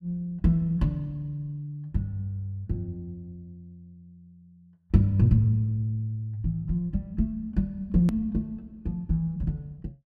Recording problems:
edit click; at 8 s

